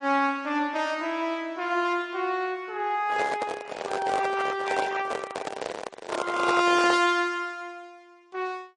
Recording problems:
lossy codec; AAC, then MP3, log-spectral distance 3 dB
microphone handling noise; from 3 to 7 s; peak +1 dB vs average level

